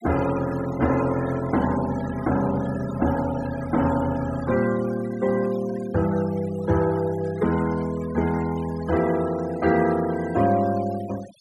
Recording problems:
noise reduction artefacts; signal-to-artefact ratio 16 dB

